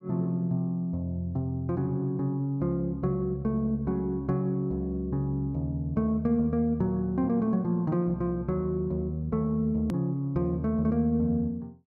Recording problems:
edit click; at 10 s

